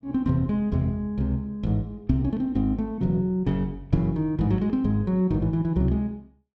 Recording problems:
none

